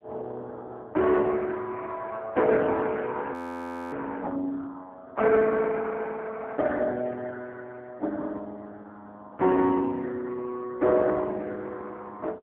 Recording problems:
phone line; 260 Hz to 3 kHz, AMR-NB
frozen audio; at 3.5 s for 0.5 s

